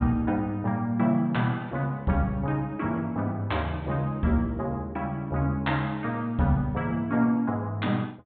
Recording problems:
treble cut off; nothing above 4 kHz

